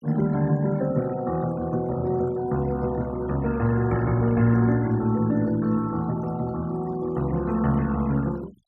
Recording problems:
denoising artefacts; signal-to-artefact ratio 20 dB

